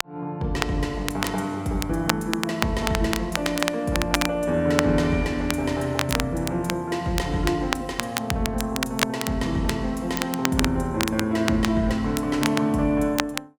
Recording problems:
crackling; vinyl, SNR 5 dB

